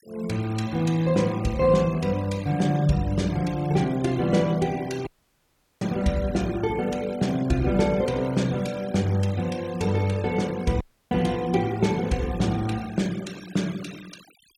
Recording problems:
denoising artefacts; signal-to-artefact ratio 20 dB
audio cutting out; at 5 s for 0.5 s and at 11 s

